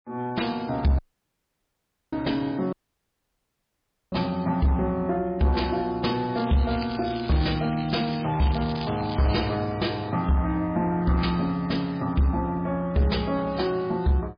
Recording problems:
codec artefacts; MP3, log-spectral distance 5 dB, nothing above 5 kHz
distortion; soft clipping, signal-to-distortion ratio 11 dB
audio cutting out; at 1 s for 1 s and at 2.5 s for 1.5 s
crackling; from 6.5 to 9.5 s; loose cable, SNR 13 dB

